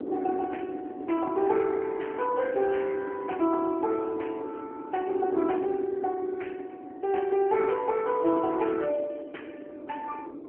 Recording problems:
phone line; 240 Hz to 3.2 kHz, AMR-NB
wind noise; below 410 Hz, SNR 11 dB

